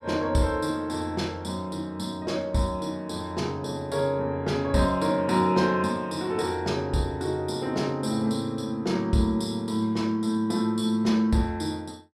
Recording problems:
none

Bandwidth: 14.5 kHz